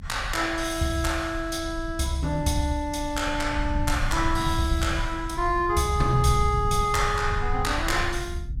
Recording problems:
low-frequency rumble; below 92 Hz, SNR 7 dB

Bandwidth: 16 kHz